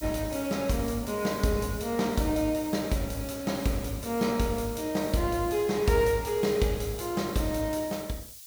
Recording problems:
background hiss; SNR 15 dB

